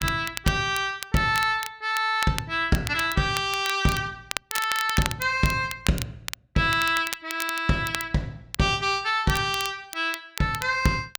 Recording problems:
crackling; vinyl, SNR 10 dB

